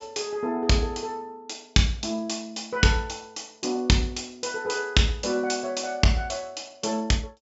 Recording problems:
low-pass filter; nothing above 7.6 kHz

